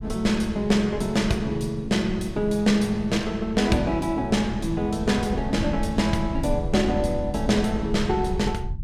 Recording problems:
rumble; below 98 Hz, SNR 10 dB

